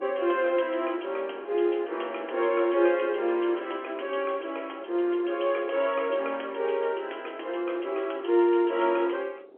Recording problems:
phone line; 300 Hz to 3.3 kHz, G.711
wind noise; below 490 Hz, SNR 21 dB

